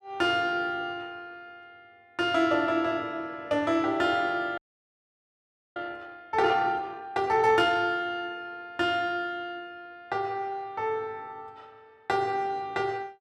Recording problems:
frozen audio; at 4.5 s for 1 s

